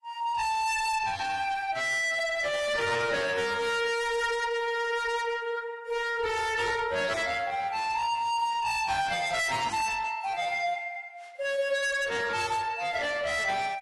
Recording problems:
lossy compression; AAC, then AAC, log-spectral distance 3 dB, nothing above 11.3 kHz
distortion; soft clipping, signal-to-distortion ratio 6 dB

